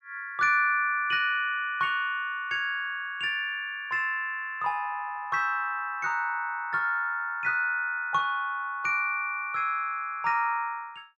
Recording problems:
none

